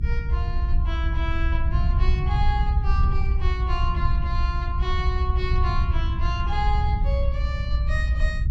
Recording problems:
low-frequency rumble; below 72 Hz, SNR -7 dB

